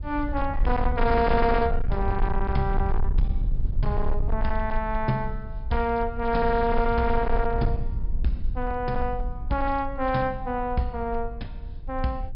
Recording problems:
treble cut off; nothing above 5.5 kHz
distortion; hard clipping, signal-to-distortion ratio 11 dB
low-frequency rumble; below 56 Hz, strongest tone 20 Hz, SNR 4 dB

